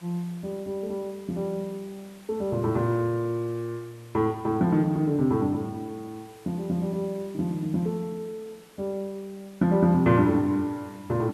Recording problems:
hiss; slope -3 dB per octave, SNR 26 dB

